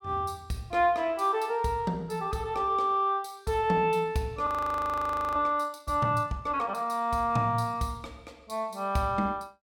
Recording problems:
frozen audio; at 4.5 s for 1 s

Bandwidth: 17 kHz